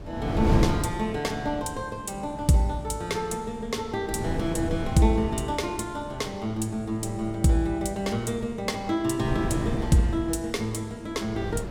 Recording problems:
wind on the microphone; below 280 Hz, SNR 6 dB

